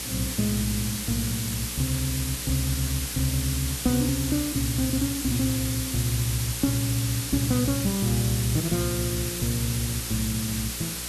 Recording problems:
hum; 60 Hz, harmonics up to 540 Hz, SNR 14 dB
hiss; slope +2 dB per octave, SNR 3 dB

